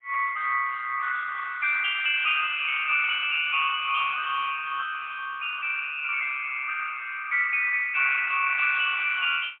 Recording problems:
telephone audio; 0 Hz to 3.6 kHz, AMR-NB, then MP3

